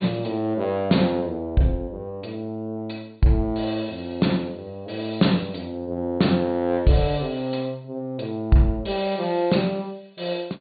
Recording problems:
treble cut off; nothing above 4.6 kHz

